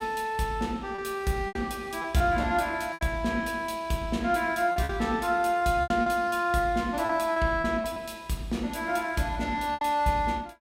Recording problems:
lost packets; 7% of the sound replaced, filled with repeated pitch periods

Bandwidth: 16 kHz